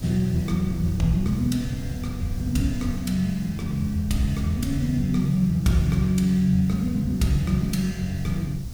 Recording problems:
hiss; SNR 23 dB
wind on the microphone; below 110 Hz, SNR 12 dB

